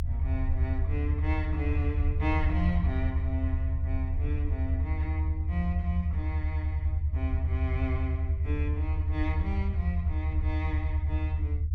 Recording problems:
rumble; below 80 Hz, strongest tone 78 Hz, SNR -7 dB

